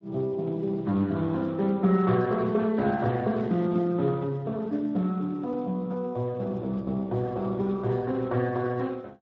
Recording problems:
lossy compression; Speex, log-spectral distance 2 dB

